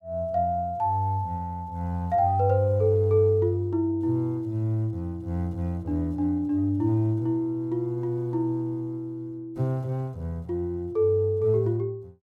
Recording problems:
none

